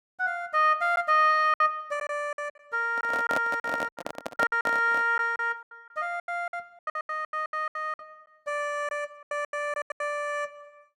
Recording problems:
packet loss; 16% of the sound replaced, filled with silence
handling noise; from 3 to 5 s; peak +1 dB vs average level

